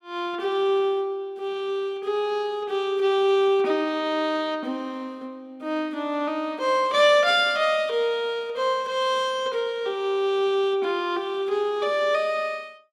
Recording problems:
none

